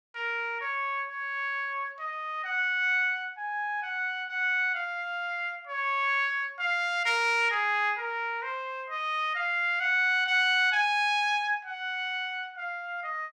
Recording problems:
none

